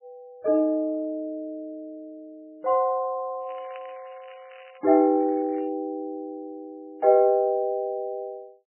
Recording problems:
lossy codec; MP3, log-spectral distance 3 dB
crackle; from 3.5 to 5.5 s; loose cable, SNR 27 dB

